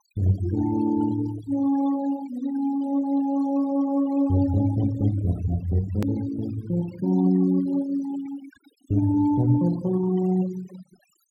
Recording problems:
denoising artefacts; signal-to-artefact ratio 18 dB
edit click; at 6 s

